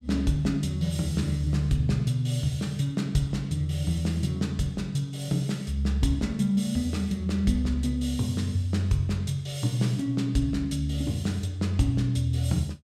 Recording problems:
none

